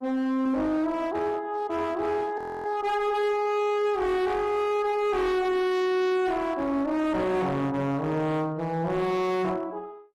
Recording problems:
codec artefacts; Opus, log-spectral distance 2 dB, nothing above 13.1 kHz
distorted audio; hard clipping, signal-to-distortion ratio 8 dB
frozen audio; at 2.5 s

